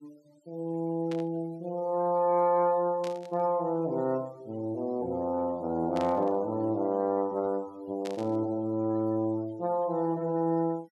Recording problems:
denoising artefacts; signal-to-artefact ratio 27 dB
burst of static; 4 times, first at 1 s; peak -9 dB vs average level

